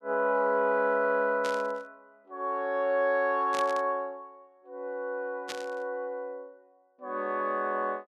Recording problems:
static burst; at 1.5 s, at 3.5 s and at 5.5 s; peak -4 dB vs average level

